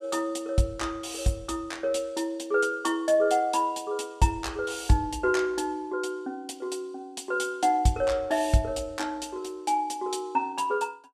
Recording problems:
none

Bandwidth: 15 kHz